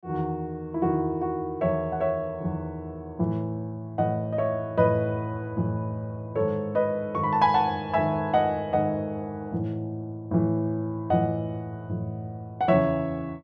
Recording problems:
none

